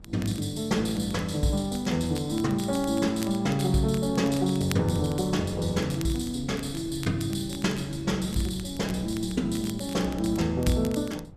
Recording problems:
wind on the microphone; below 190 Hz, SNR 18 dB
crackle; vinyl, SNR 18 dB

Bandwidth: 14 kHz